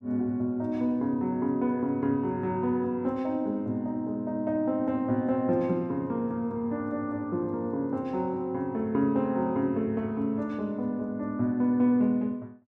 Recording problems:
none

